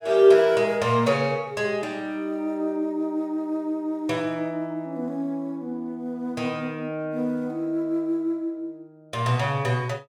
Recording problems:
none

